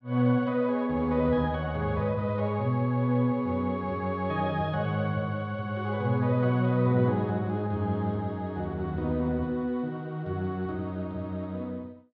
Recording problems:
none

